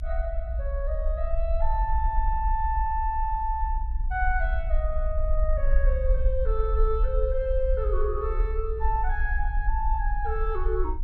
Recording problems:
low-frequency rumble; below 58 Hz, SNR -1 dB

